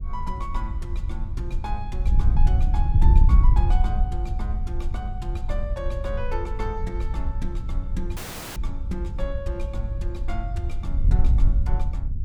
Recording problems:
wind noise; below 62 Hz, SNR -10 dB
audio cutting out; at 8 s

